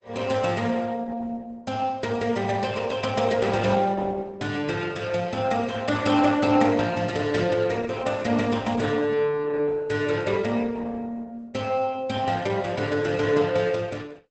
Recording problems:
lossy codec; Opus, log-spectral distance 4 dB, nothing above 8 kHz

